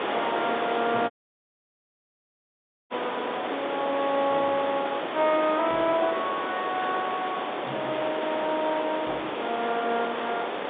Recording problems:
phone line; 220 Hz to 3.7 kHz, G.711
background hiss; SNR 3 dB
dropout; at 1 s for 2 s

